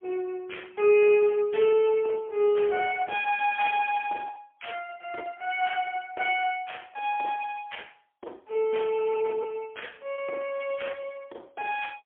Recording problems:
telephone audio; 320 Hz to 3.3 kHz, AMR-NB, then MP3
lost packets; 6% of the sound replaced, filled with repeated pitch periods

